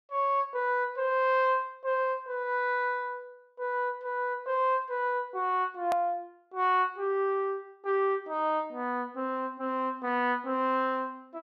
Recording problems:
edit click; at 6 s

